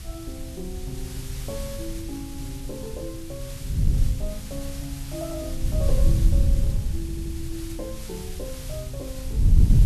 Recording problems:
background hiss; slope +1 dB per octave, SNR 5 dB
wind on the microphone; below 84 Hz, SNR -9 dB
audio stuttering; at 7 s

